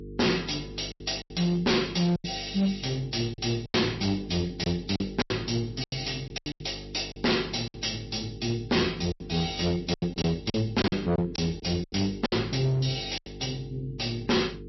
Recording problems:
lossy compression; MP3, log-spectral distance 9 dB, nothing above 5.7 kHz
distortion; hard clipping, signal-to-distortion ratio 6 dB
hum; 50 Hz, harmonics up to 450 Hz, SNR 14 dB
packet loss; 10% of the sound replaced, filled with silence

